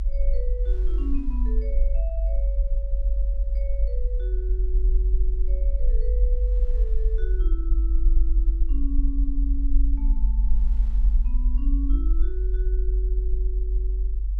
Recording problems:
rumble; below 48 Hz, SNR -14 dB
wind on the microphone; below 1.5 kHz, SNR 24 dB

